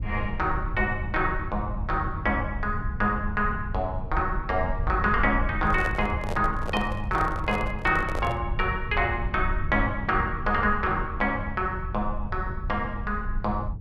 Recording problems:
low-frequency rumble; below 88 Hz, SNR 6 dB
microphone handling noise; from 5.5 to 8.5 s; peak -1 dB vs average level

